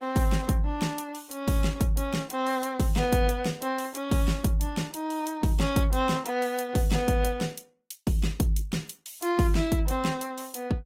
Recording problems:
lossy compression; Opus, log-spectral distance 4 dB, nothing above 16 kHz

